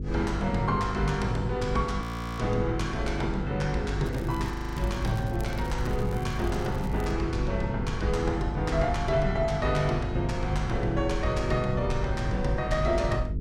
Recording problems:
hum; 50 Hz, harmonics up to 500 Hz, SNR 5 dB
low-frequency rumble; below 100 Hz, SNR 8 dB
frozen audio; at 2 s and at 4.5 s
crackling; from 4 to 7 s; loose cable, SNR 21 dB

